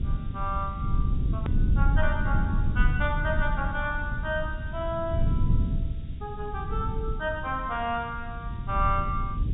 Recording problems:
treble missing; nothing above 4 kHz
hiss; SNR 27 dB
low-frequency rumble; below 110 Hz, SNR -1 dB
click at an edit; at 1.5 s

